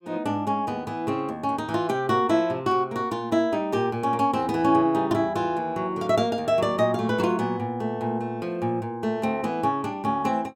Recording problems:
none

